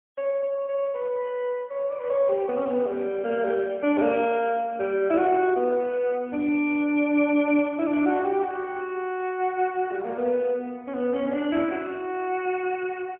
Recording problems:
phone line; 220 Hz to 3.2 kHz, AMR-NB, then MP3

